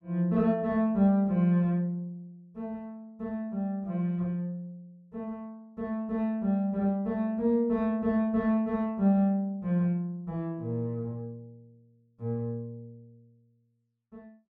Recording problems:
none

